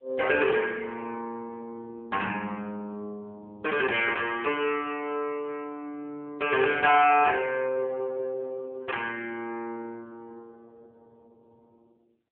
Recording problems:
telephone audio; 300 Hz to 3.2 kHz, AMR-NB

